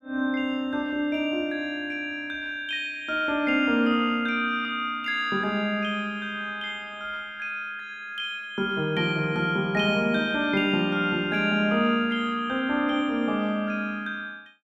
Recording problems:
none

